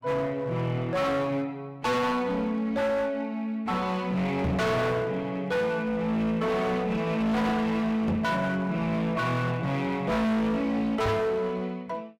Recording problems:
distorted audio; hard clipping, uneven, signal-to-distortion ratio 6 dB
knock on the microphone; at 4.5 s, at 8 s and at 11 s; peak +4 dB vs average level

